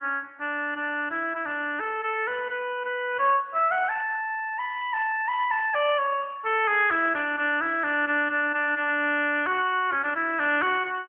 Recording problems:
telephone audio; 300 Hz to 3.2 kHz, AMR-NB

